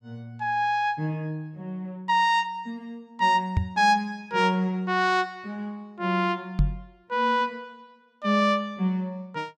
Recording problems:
knock on the microphone; at 3.5 s and at 6.5 s; peak +5 dB vs average level

